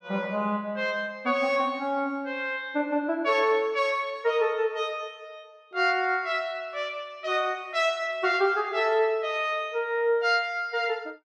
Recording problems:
none

